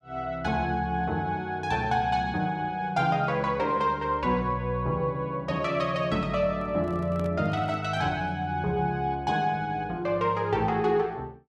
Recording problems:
handling noise; from 6.5 to 8 s; peak -6 dB vs average level

